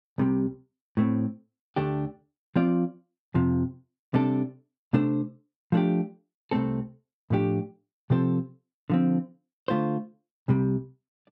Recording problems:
none

